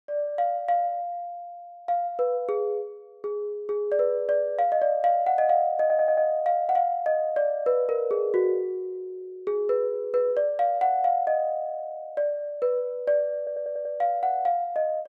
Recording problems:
audio stuttering; at 6 s and at 13 s

